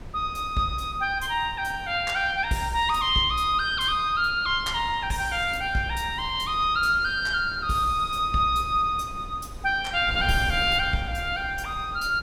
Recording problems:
wind noise; below 190 Hz, SNR 16 dB

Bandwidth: 17 kHz